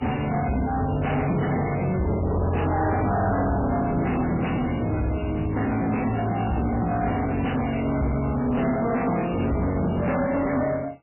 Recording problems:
lossy codec; MP3, log-spectral distance 7 dB, nothing above 2.9 kHz
distorted audio; soft clipping, signal-to-distortion ratio 7 dB

